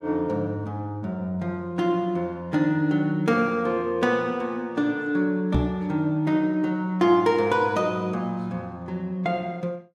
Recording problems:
microphone thump; at 5.5 s; peak +7 dB vs average level

